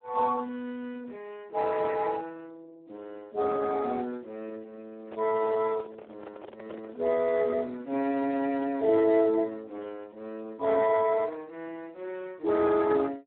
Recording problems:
phone line; 260 Hz to 2 kHz, Speex
microphone handling noise; from 5 to 7.5 s; peak -10 dB vs average level

